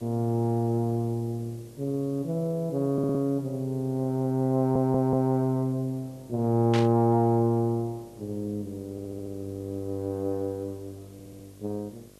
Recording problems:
electrical hum; 50 Hz, harmonics up to 1.3 kHz, SNR 26 dB
background hiss; slope +1 dB per octave, SNR 29 dB
stutter; 4 times, first at 3 s
static burst; at 6.5 s; peak -2 dB vs average level

